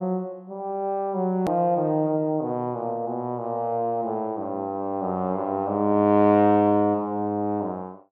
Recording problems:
click at an edit; at 1.5 s

